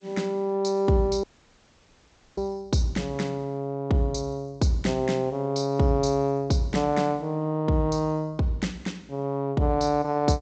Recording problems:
lossy codec; G.722, log-spectral distance 3 dB, nothing above 7.3 kHz
audio cutting out; at 1 s for 1 s

